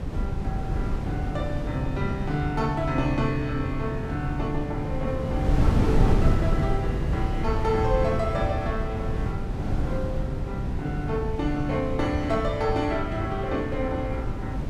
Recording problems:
hum; 50 Hz, harmonics up to 550 Hz, SNR 17 dB
wind noise; below 170 Hz, SNR 0 dB

